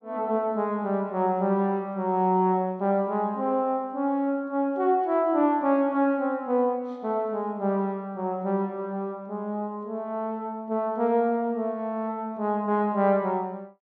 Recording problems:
none

